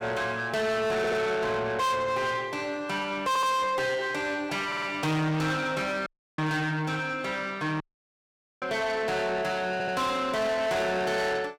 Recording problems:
distortion; soft clipping, signal-to-distortion ratio 7 dB
stutter; 4 times, first at 1 s
dropout; at 6 s and at 8 s for 1 s

